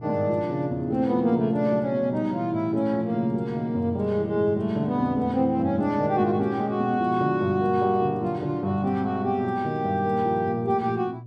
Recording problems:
electrical hum; 60 Hz, harmonics up to 360 Hz, SNR 17 dB

